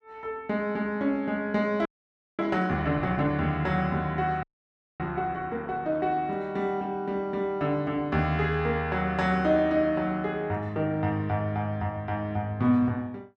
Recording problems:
frozen audio; at 2 s for 0.5 s and at 4.5 s for 0.5 s

